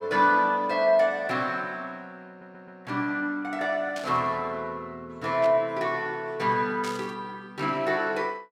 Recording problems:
stutter; at 2.5 s
static burst; at 4 s, at 5.5 s and at 7 s; peak -8 dB vs average level

